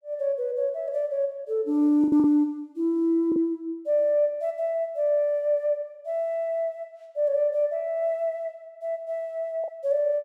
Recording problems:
lost packets; 2% of the sound replaced, filled with the last packet

